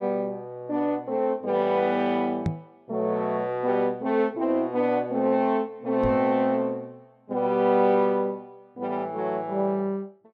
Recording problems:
microphone bump; at 2.5 s and at 6 s; peak +3 dB vs average level

